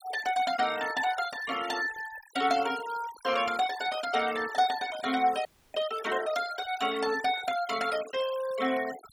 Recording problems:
denoising artefacts; signal-to-artefact ratio 14 dB
audio freezing; at 5.5 s

